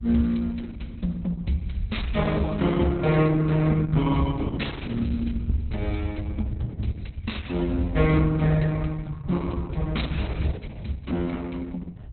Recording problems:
lossy codec; Opus, log-spectral distance 3 dB, nothing above 4.1 kHz
rumble; below 88 Hz, SNR 8 dB

